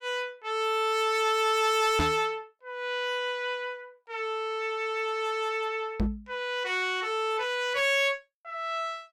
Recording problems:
distortion; hard clipping, signal-to-distortion ratio 12 dB
microphone thump; at 2 s and at 6 s; peak +4 dB vs average level

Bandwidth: 16.5 kHz